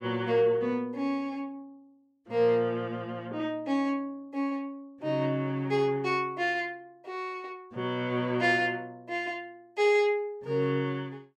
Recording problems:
none

